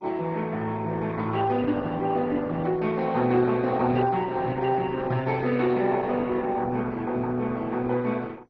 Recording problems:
codec artefacts; Opus, then MP2, log-spectral distance 3 dB, nothing above 5.7 kHz

